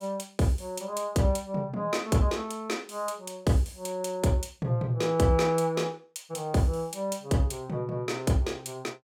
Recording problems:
none

